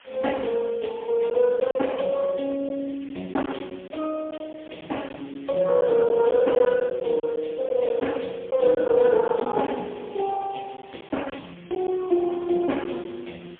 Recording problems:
phone line; 280 Hz to 3.4 kHz, AMR-NB, then MP3
background hiss; SNR 26 dB
packet loss; 4% of the sound replaced, filled with silence

